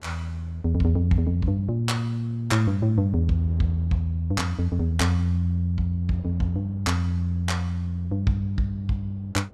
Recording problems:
wind noise; below 430 Hz, SNR 26 dB

